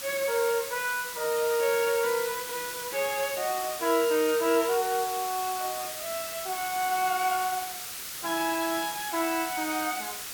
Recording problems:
hiss; slope +1 dB per octave, SNR 6 dB

